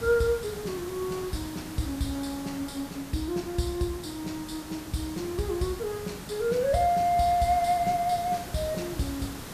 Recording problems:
hiss; slope -4 dB per octave, SNR 11 dB

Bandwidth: 14.5 kHz